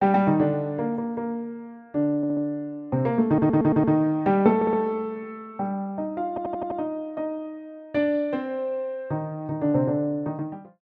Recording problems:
stutter; 4 times, first at 2 s

